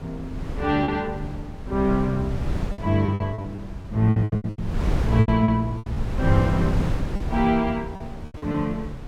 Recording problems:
wind noise; below 160 Hz, SNR 7 dB
packet loss; 11% of the sound replaced, filled with repeated pitch periods

